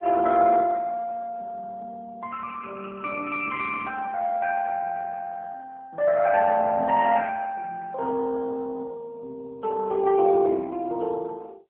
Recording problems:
telephone audio; 240 Hz to 2.8 kHz, AMR-NB

